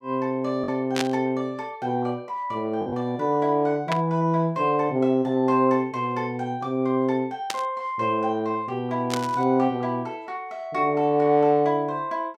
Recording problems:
lost packets; 0.8% of the sound replaced, filled with the last packet
burst of static; 4 times, first at 1 s; peak +2 dB vs average level

